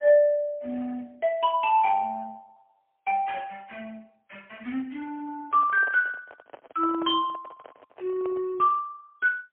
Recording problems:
telephone audio; 220 Hz to 3.3 kHz, AMR-NB, then MP3
handling noise; from 5.5 to 8.5 s; peak -11 dB vs average level

